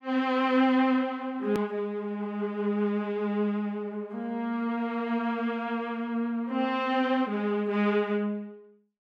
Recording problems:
hard cut with a click; at 1.5 s

